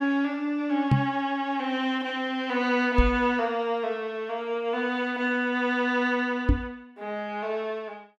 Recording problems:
knock on the microphone; at 1 s, at 3 s and at 6.5 s; peak +9 dB vs average level

